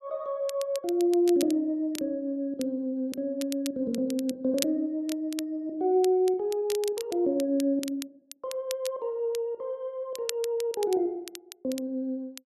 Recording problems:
crackle; vinyl, SNR 13 dB

